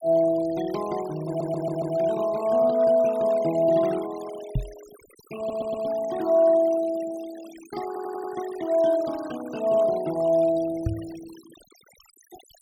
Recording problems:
denoising artefacts; signal-to-artefact ratio 19 dB
stutter; at 1.5 s, at 5.5 s and at 8 s
microphone bump; at 4.5 s and at 11 s; peak +1 dB vs average level

